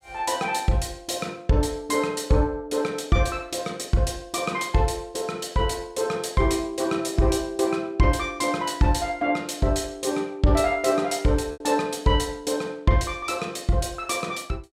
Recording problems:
lost packets; 0.6% of the sound replaced, filled with repeated pitch periods

